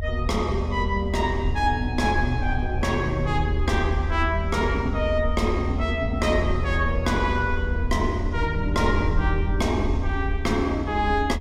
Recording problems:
low-frequency rumble; below 78 Hz, SNR 3 dB

